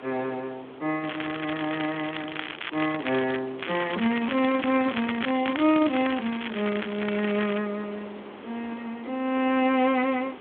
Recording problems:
phone line; 240 Hz to 3.5 kHz, Speex
hiss; SNR 17 dB
crackling; from 1 to 3.5 s and from 3.5 to 7.5 s; loose cable, SNR 7 dB

